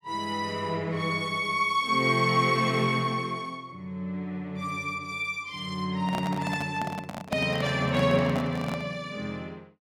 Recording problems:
handling noise; from 6 to 9 s; peak +1 dB vs average level

